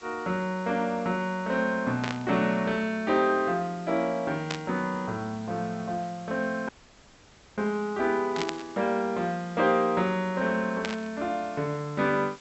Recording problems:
treble missing; nothing above 7.8 kHz
background hiss; slope 0 dB per octave, SNR 23 dB
static burst; 4 times, first at 2 s; peak 0 dB vs average level
dropout; at 6.5 s for 1 s

